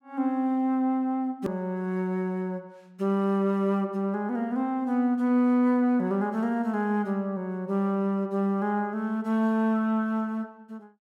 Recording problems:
edit click; at 1.5 s

